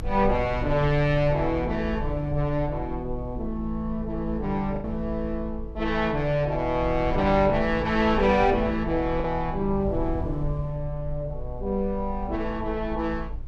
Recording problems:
low-frequency rumble; below 66 Hz, strongest tone 20 Hz, SNR 10 dB
packet loss; 0.9% of the sound replaced, filled with the last packet

